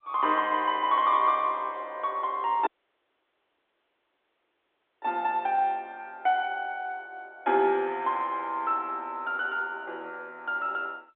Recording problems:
telephone audio; 280 Hz to 3.8 kHz, G.711
dropout; at 2.5 s for 2.5 s

